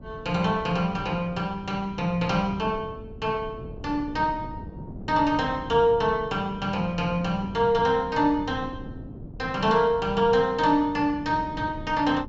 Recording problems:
low-pass filter; nothing above 7.4 kHz
wind noise; below 250 Hz, SNR 15 dB

